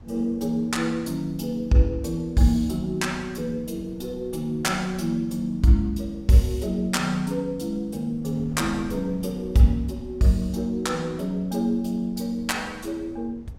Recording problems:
wind noise; below 190 Hz, SNR 20 dB

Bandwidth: 16 kHz